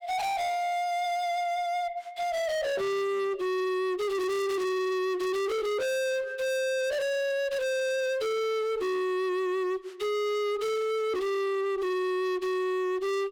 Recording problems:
distorted audio; hard clipping, uneven, signal-to-distortion ratio 6 dB

